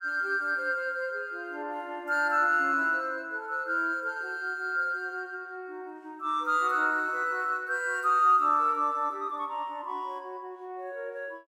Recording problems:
none

